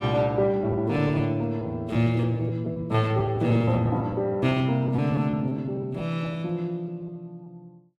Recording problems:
packet loss; 9% of the sound replaced, filled with repeated pitch periods

